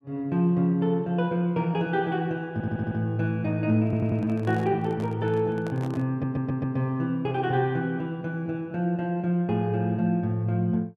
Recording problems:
audio stuttering; at 2.5 s, at 4 s and at 6 s
microphone handling noise; from 4 to 6 s; peak -9 dB vs average level

